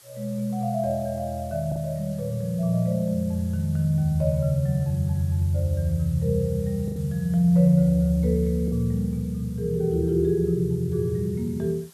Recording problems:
hiss; slope 0 dB per octave, SNR 25 dB
lost packets; 1.4% of the sound replaced, filled with the last packet

